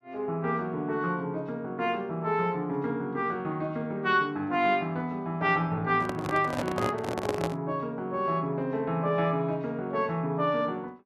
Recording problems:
microphone handling noise; from 6 to 7.5 s; peak +2 dB vs average level

